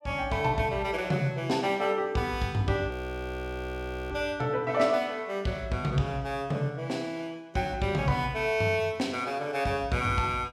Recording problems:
audio freezing; at 3 s for 1 s

